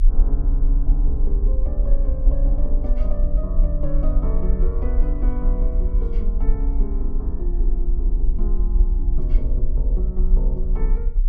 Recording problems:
low-frequency rumble; below 42 Hz, strongest tone 32 Hz, SNR -10 dB

